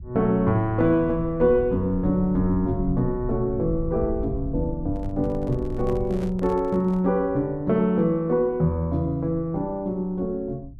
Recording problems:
rumble; below 96 Hz, SNR 12 dB
microphone handling noise; from 5 to 7 s; peak -11 dB vs average level

